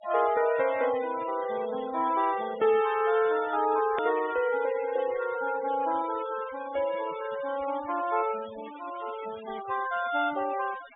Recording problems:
treble missing; nothing above 3.6 kHz
noise reduction artefacts; signal-to-artefact ratio 17 dB
edit click; at 4 s

